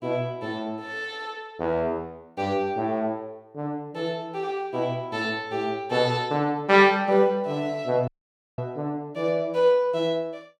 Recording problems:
audio cutting out; at 8 s for 0.5 s

